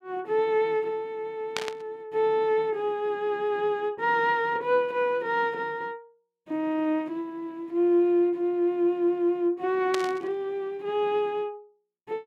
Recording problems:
burst of static; at 1.5 s and at 10 s; peak +1 dB vs average level

